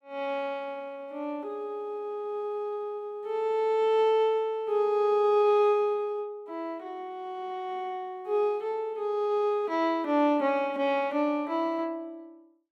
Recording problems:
none

